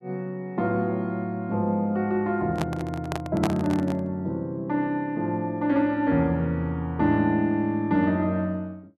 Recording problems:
handling noise; from 2.5 to 4 s; peak +2 dB vs average level

